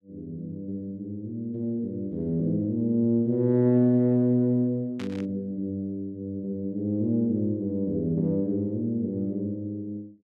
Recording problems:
static burst; at 5 s; peak -11 dB vs average level

